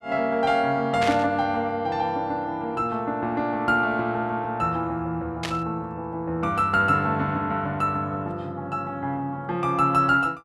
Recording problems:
static burst; at 1 s and at 5.5 s; peak -1 dB vs average level

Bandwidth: 13 kHz